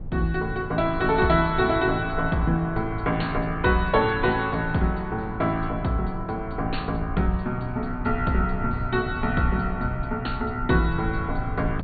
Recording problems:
treble missing; nothing above 4.5 kHz
low-frequency rumble; below 110 Hz, SNR 10 dB

